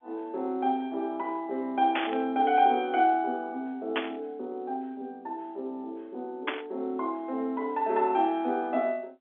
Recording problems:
phone line; 220 Hz to 3.8 kHz, G.711
static burst; at 2 s, at 4 s and at 6.5 s; peak +4 dB vs average level

